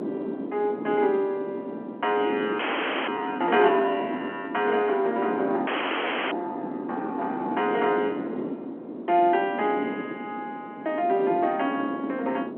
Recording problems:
phone line; 240 Hz to 3.3 kHz, G.711
wind on the microphone; below 430 Hz, SNR 7 dB
audio freezing; at 2.5 s and at 5.5 s for 0.5 s

